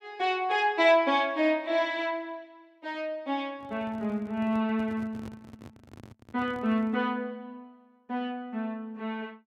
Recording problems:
handling noise; from 3.5 to 7 s; peak -11 dB vs average level

